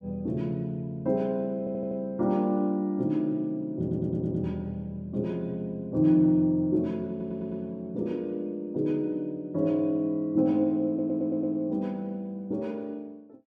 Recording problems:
audio stuttering; 4 times, first at 1.5 s

